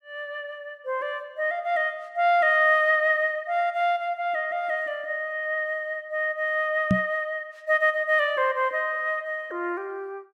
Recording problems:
microphone thump; at 7 s; peak +6 dB vs average level

